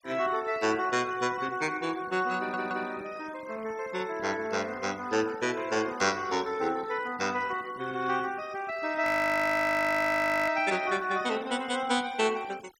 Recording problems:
denoising artefacts; signal-to-artefact ratio 21 dB
stutter; at 2.5 s
frozen audio; at 9 s for 1.5 s

